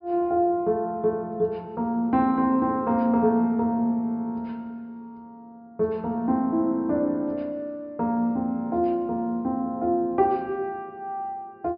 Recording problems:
treble missing; nothing above 5.2 kHz

